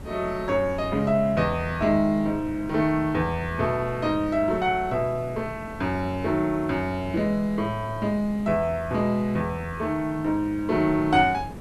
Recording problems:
hiss; SNR 24 dB
wind noise; below 310 Hz, SNR 16 dB

